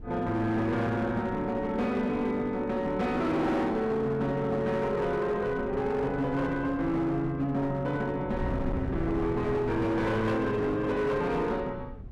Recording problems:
distorted audio; hard clipping, signal-to-distortion ratio 11 dB
wind noise; below 190 Hz, SNR 13 dB

